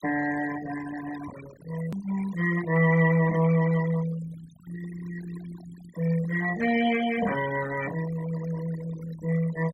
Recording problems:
denoising artefacts; signal-to-artefact ratio 13 dB
hard cut with a click; at 2 s

